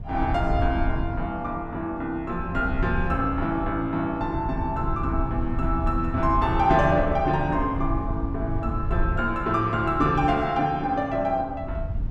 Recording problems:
wind on the microphone; below 96 Hz, SNR 6 dB

